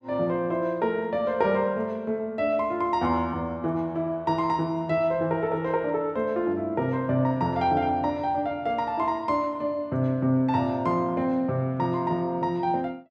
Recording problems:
none

